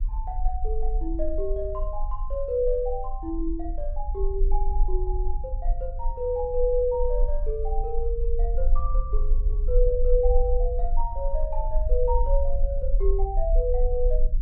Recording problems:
low-frequency rumble; below 40 Hz, strongest tone 24 Hz, SNR -1 dB

